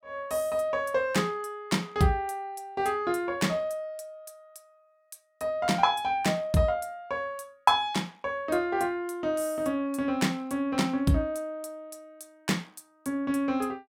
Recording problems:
none

